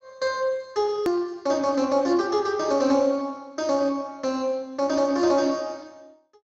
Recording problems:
lossy codec; Speex, log-spectral distance 3 dB, nothing above 6.3 kHz
click at an edit; at 1 s

